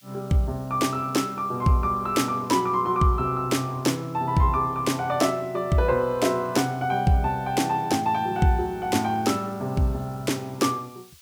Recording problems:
hiss; slope +4 dB per octave, SNR 28 dB

